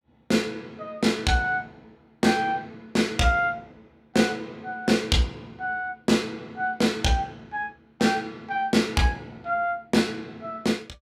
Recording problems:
none

